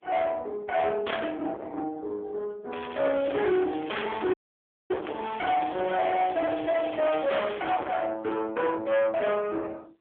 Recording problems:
phone line; 280 Hz to 3 kHz, AMR-NB
distortion; soft clipping, signal-to-distortion ratio 4 dB
crackling; from 2.5 to 6 s and from 6 to 7.5 s; loose cable, SNR 14 dB
audio cutting out; at 4.5 s for 0.5 s

